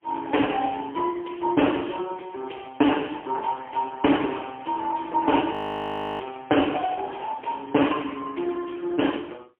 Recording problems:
telephone audio; 240 Hz to 3.2 kHz, AMR-NB, then MP3
audio freezing; at 5.5 s for 0.5 s

